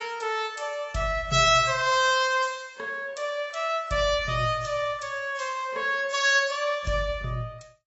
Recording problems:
codec artefacts; AAC, log-spectral distance 3 dB, nothing above 6.7 kHz

